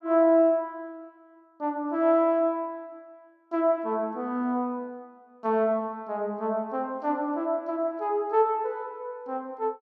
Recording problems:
none

